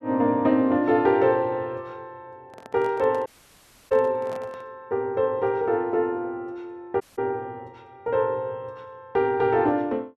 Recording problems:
handling noise; from 2.5 to 4.5 s; peak -12 dB vs average level
dropout; at 3.5 s for 0.5 s and at 7 s

